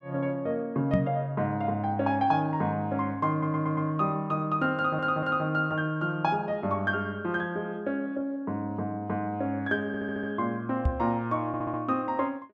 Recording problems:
microphone thump; at 1 s and at 11 s; peak +6 dB vs average level
audio stuttering; 4 times, first at 3.5 s

